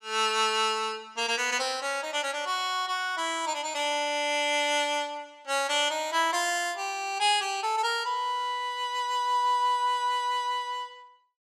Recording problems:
none

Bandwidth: 14.5 kHz